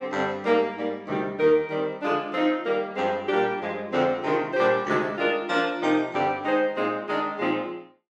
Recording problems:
none

